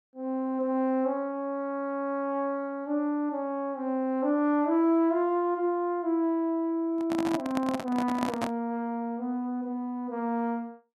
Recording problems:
microphone handling noise; from 7 to 8.5 s; peak +1 dB vs average level

